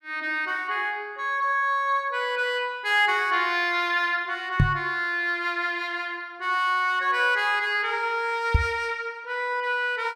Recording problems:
knock on the microphone; at 4.5 s and at 8.5 s; peak +7 dB vs average level

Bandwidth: 14.5 kHz